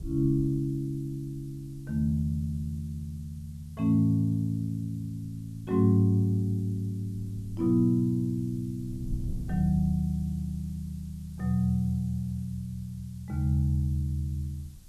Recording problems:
background hiss; SNR 30 dB
wind noise; below 120 Hz, SNR 18 dB

